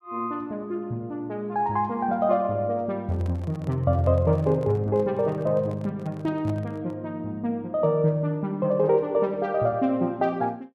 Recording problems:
microphone handling noise; from 3 to 7 s; peak -11 dB vs average level

